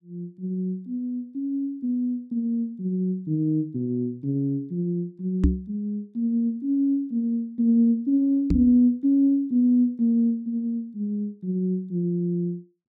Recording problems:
microphone bump; at 5.5 s and at 8.5 s; peak +7 dB vs average level

